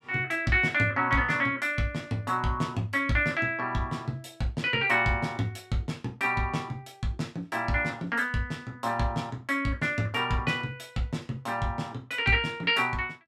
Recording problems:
none

